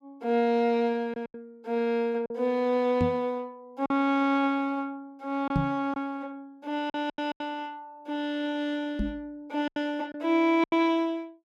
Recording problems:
packet loss; 5% of the sound replaced, filled with silence
microphone thump; at 3 s, at 5.5 s and at 9 s; peak +4 dB vs average level

